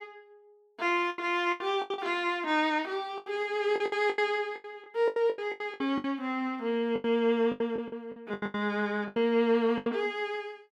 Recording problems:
packet loss; 16% of the sound replaced, filled with the last packet

